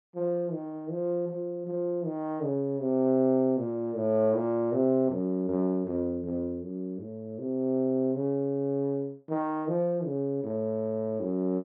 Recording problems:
none

